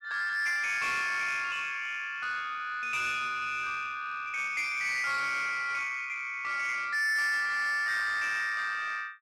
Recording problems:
distortion; soft clipping, signal-to-distortion ratio 11 dB

